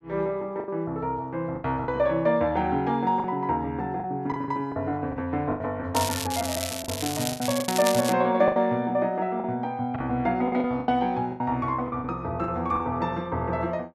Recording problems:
lost packets; 9% of the sound replaced, filled with the last packet
crackle; from 6 to 8 s; loose cable, SNR 5 dB

